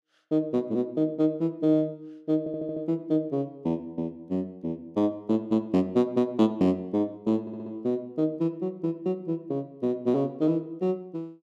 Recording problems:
stutter; at 2.5 s and at 7.5 s

